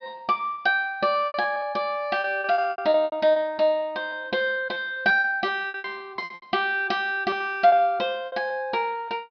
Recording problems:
low-pass filter; nothing above 5.5 kHz
lost packets; 16% of the sound replaced, filled with repeated pitch periods

